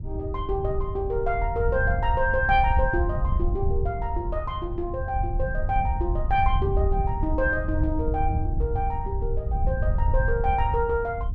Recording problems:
wind on the microphone; below 82 Hz, SNR 1 dB

